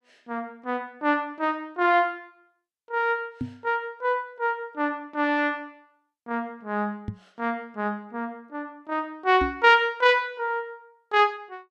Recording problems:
microphone bump; at 3.5 s, at 7 s and at 9.5 s; peak -1 dB vs average level

